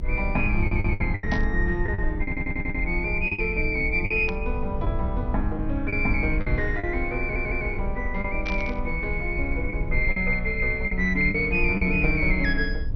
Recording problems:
lossy codec; MP2, log-spectral distance 2 dB, nothing above 5 kHz
low-frequency rumble; below 64 Hz, strongest tone 22 Hz, SNR 5 dB
lost packets; 7% of the sound replaced, filled with the last packet
audio stuttering; at 0.5 s, at 2 s and at 7 s
static burst; at 1.5 s, at 4.5 s and at 8.5 s; peak -7 dB vs average level

